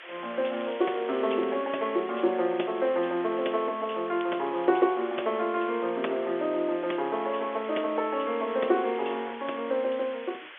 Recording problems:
telephone audio; 300 Hz to 3.4 kHz, G.711
background hiss; SNR 16 dB
crackle; at 0.5 s and at 4 s; loose cable, SNR 23 dB

